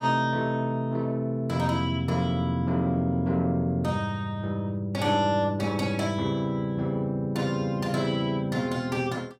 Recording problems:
none

